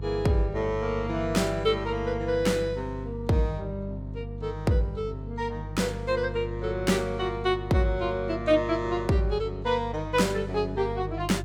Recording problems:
hum; 50 Hz, harmonics up to 350 Hz, SNR 9 dB

